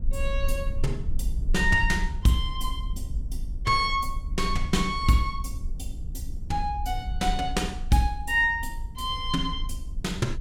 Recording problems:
low-frequency rumble; below 56 Hz, strongest tone 20 Hz, SNR 7 dB

